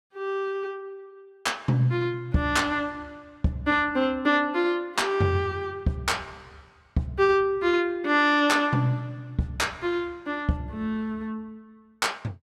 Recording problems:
none

